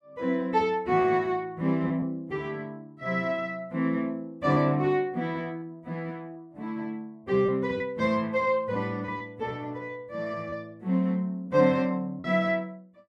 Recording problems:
lost packets; 2% of the sound replaced, filled with repeated pitch periods

